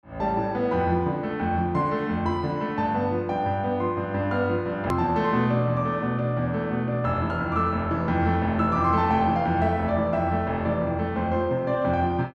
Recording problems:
hard cut with a click; at 5 s

